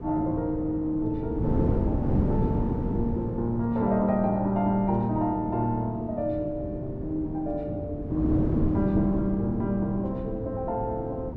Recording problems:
wind noise; below 290 Hz, SNR 4 dB

